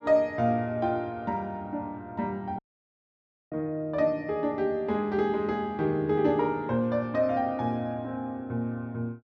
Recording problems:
dropout; at 2.5 s for 1 s

